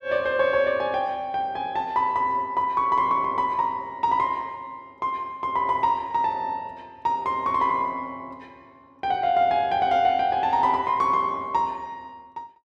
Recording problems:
none

